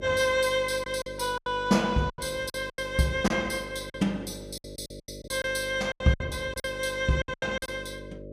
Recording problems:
electrical hum; 50 Hz, harmonics up to 600 Hz, SNR 14 dB
lost packets; 13% of the sound replaced, filled with silence

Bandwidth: 15 kHz